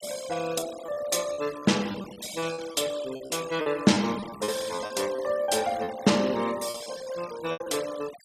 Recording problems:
denoising artefacts; signal-to-artefact ratio 15 dB
lost packets; 11% of the sound replaced, filled with repeated pitch periods

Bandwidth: 14.5 kHz